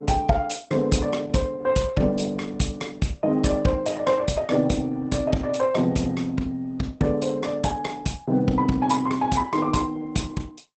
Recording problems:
codec artefacts; Opus, log-spectral distance 3 dB, nothing above 8.2 kHz

